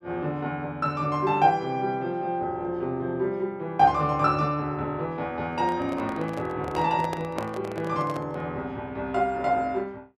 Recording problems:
microphone handling noise; from 5.5 to 8.5 s; peak -1 dB vs average level

